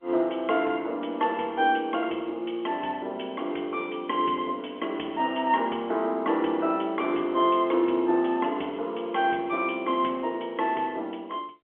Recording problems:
telephone audio; 240 Hz to 3.3 kHz, G.711

